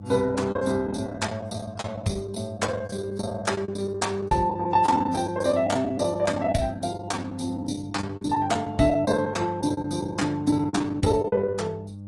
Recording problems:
lossy codec; Opus, then AAC, log-spectral distance 3 dB, nothing above 10.7 kHz
hum; 50 Hz, harmonics up to 600 Hz, SNR 14 dB
packet loss; 15% of the sound replaced, filled with the last packet

